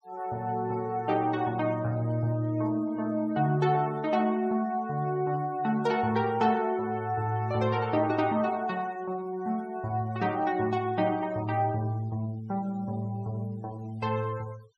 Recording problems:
denoising artefacts; signal-to-artefact ratio 26 dB

